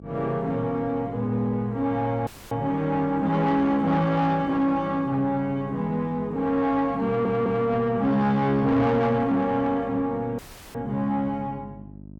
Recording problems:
distorted audio; soft clipping, signal-to-distortion ratio 12 dB
electrical hum; 50 Hz, harmonics up to 700 Hz, SNR 19 dB
audio cutting out; at 2.5 s and at 10 s
audio stuttering; at 7 s

